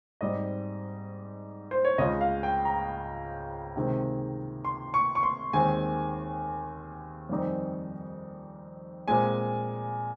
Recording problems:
none

